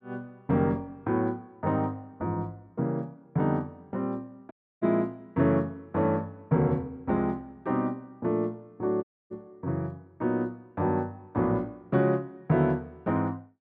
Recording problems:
dropout; at 4.5 s and at 9 s

